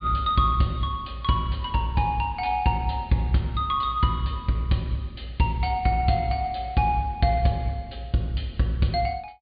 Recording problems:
treble cut off; nothing above 4.7 kHz

